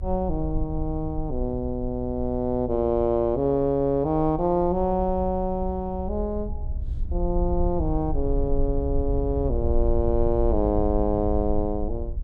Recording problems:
low-frequency rumble; below 64 Hz, strongest tone 22 Hz, SNR 6 dB

